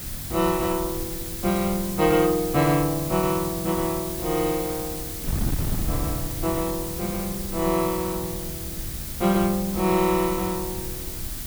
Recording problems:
background hiss; slope +4 dB per octave, SNR 7 dB
wind noise; below 160 Hz, SNR 11 dB

